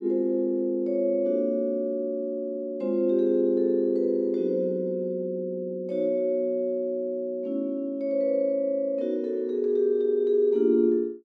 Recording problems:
none

